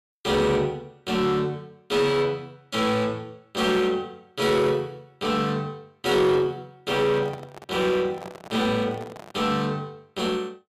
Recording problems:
distortion; soft clipping, signal-to-distortion ratio 12 dB
handling noise; from 7 to 9.5 s; peak -8 dB vs average level

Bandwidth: 15 kHz